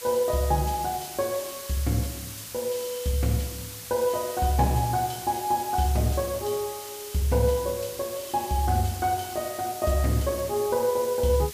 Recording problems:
background hiss; slope +2 dB per octave, SNR 11 dB

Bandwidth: 15 kHz